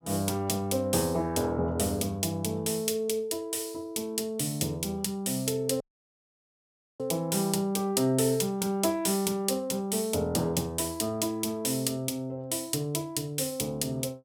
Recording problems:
dropout; at 6 s for 1 s

